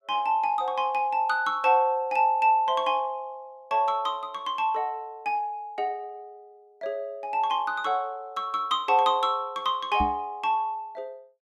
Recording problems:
microphone bump; at 10 s; peak -1 dB vs average level

